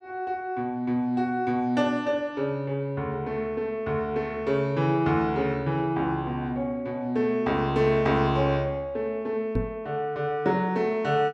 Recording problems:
knock on the microphone; at 9.5 s; peak +2 dB vs average level

